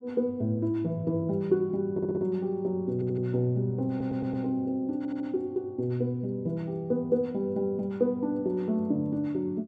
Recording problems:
stutter; 4 times, first at 2 s

